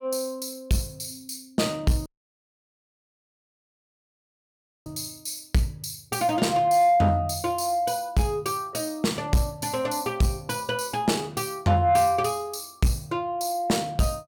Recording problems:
distorted audio; soft clipping, signal-to-distortion ratio 12 dB
audio cutting out; at 2 s for 3 s

